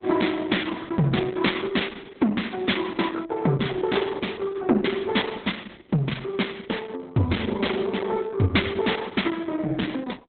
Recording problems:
lossy compression; Opus, log-spectral distance 5 dB, nothing above 3.9 kHz

